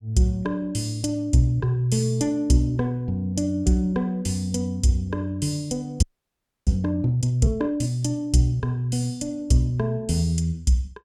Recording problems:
audio freezing; at 6 s for 0.5 s

